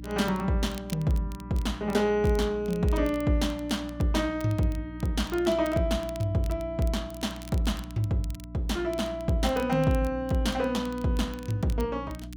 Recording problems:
electrical hum; 60 Hz, harmonics up to 300 Hz, SNR 13 dB
crackle; vinyl, SNR 22 dB

